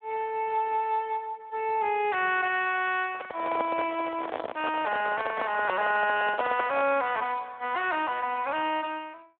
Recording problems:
telephone audio; 260 Hz to 3.7 kHz, Speex
microphone handling noise; from 3 to 7 s; peak +1 dB vs average level

